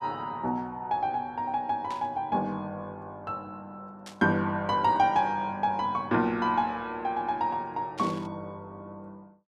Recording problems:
burst of static; at 2 s, at 4 s and at 8 s; peak -10 dB vs average level

